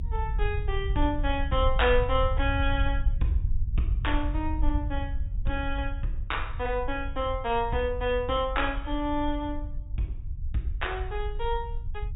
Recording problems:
treble cut off; nothing above 4 kHz
low-frequency rumble; below 66 Hz, SNR 3 dB

